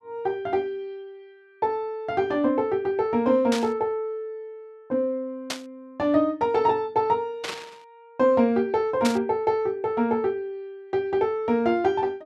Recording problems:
static burst; 4 times, first at 3.5 s; peak 0 dB vs average level

